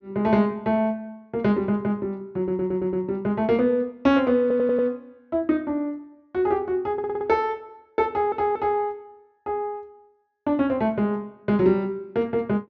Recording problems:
treble cut off; nothing above 7 kHz
stutter; 4 times, first at 2.5 s

